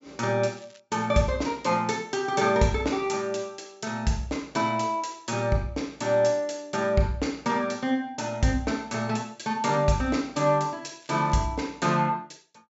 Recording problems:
treble cut off; nothing above 8 kHz
crackling; at 0.5 s and at 11 s; loose cable, SNR 29 dB

